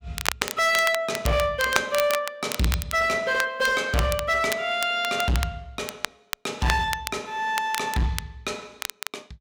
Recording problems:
distortion; hard clipping, signal-to-distortion ratio 7 dB
crackling; vinyl, SNR 8 dB

